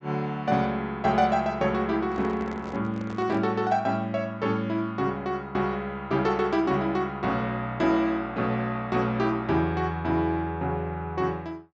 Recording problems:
treble cut off; nothing above 8 kHz
handling noise; from 2 to 3.5 s; peak -9 dB vs average level

